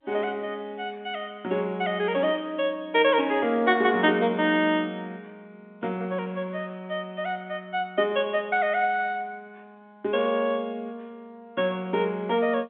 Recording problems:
telephone audio; 130 Hz to 3.6 kHz, G.711

